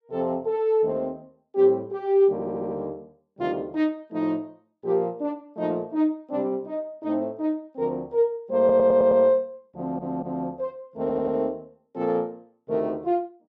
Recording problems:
audio stuttering; 4 times, first at 2.5 s

